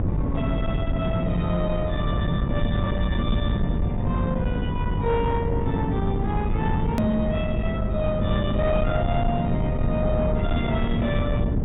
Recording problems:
treble cut off; nothing above 4 kHz
distortion; soft clipping, signal-to-distortion ratio 12 dB
hum; 50 Hz, harmonics up to 600 Hz, SNR 5 dB
rumble; below 200 Hz, SNR 0 dB
hard cut with a click; at 7 s

